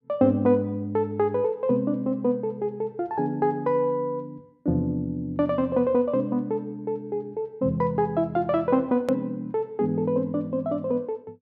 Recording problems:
hard cut with a click; at 9 s

